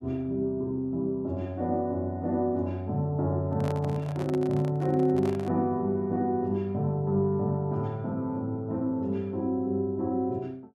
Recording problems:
microphone handling noise; from 3.5 to 5.5 s; peak -6 dB vs average level

